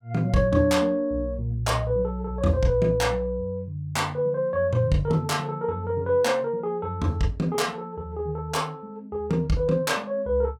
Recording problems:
none

